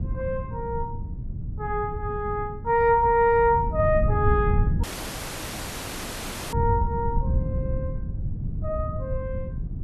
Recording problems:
wind noise; below 130 Hz, SNR 5 dB
dropout; at 5 s for 1.5 s

